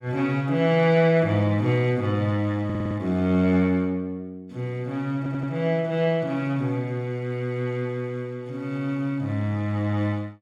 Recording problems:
audio stuttering; at 2.5 s and at 5 s

